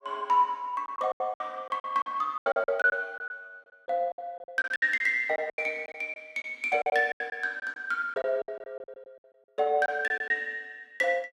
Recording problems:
lost packets; 14% of the sound replaced, filled with silence

